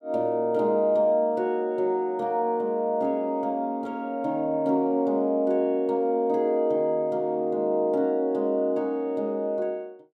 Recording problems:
none

